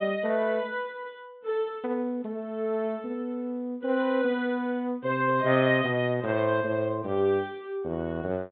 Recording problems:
treble cut off; nothing above 4 kHz

